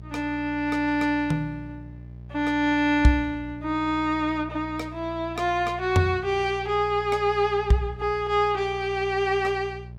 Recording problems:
electrical hum; 60 Hz, harmonics up to 600 Hz, SNR 16 dB

